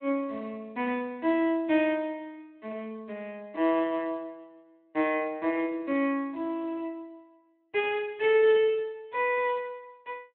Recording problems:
telephone audio; 240 Hz to 3.7 kHz, Speex

